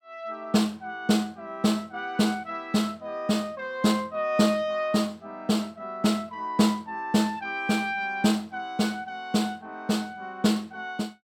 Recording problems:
none

